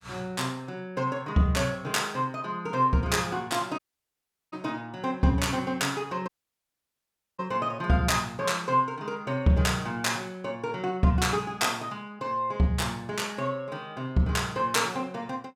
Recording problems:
audio cutting out; at 4 s for 0.5 s and at 6.5 s for 1 s

